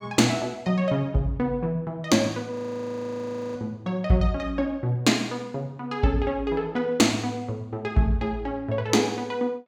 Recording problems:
frozen audio; at 2.5 s for 1 s

